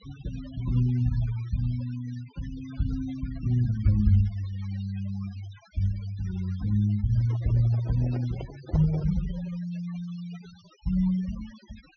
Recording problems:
low-pass filter; nothing above 6.3 kHz
noise reduction artefacts; signal-to-artefact ratio 21 dB
microphone handling noise; from 7 to 9.5 s; peak -7 dB vs average level

